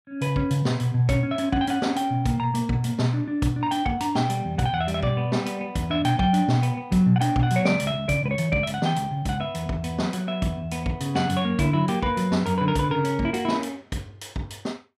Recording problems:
none

